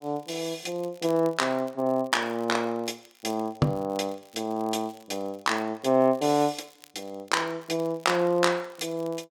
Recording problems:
crackling; vinyl, SNR 27 dB

